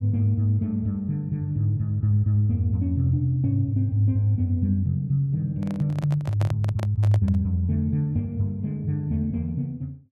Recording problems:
handling noise; from 5.5 to 7.5 s; peak -6 dB vs average level

